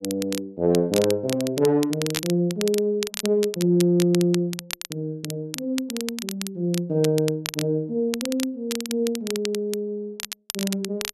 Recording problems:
crackle; vinyl, SNR 9 dB

